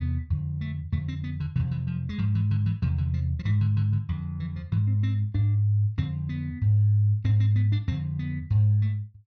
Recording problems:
none

